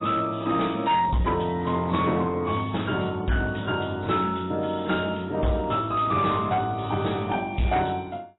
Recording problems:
lossy codec; AAC, log-spectral distance 6 dB, nothing above 3.9 kHz
distorted audio; hard clipping, uneven, signal-to-distortion ratio 12 dB

